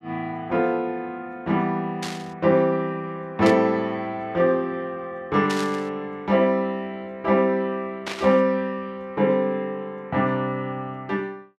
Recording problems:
burst of static; 4 times, first at 2 s; peak -3 dB vs average level

